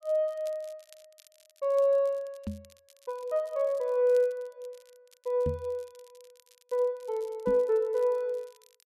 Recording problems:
crackling; vinyl, SNR 30 dB
microphone thump; at 2.5 s, at 5.5 s and at 7.5 s; peak -1 dB vs average level

